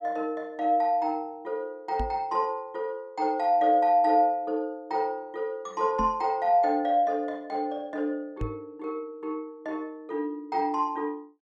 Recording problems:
knock on the microphone; at 2 s, at 6 s and at 8.5 s; peak -2 dB vs average level

